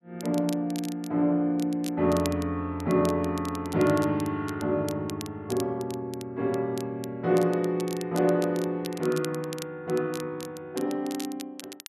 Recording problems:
crackle; vinyl, SNR 16 dB

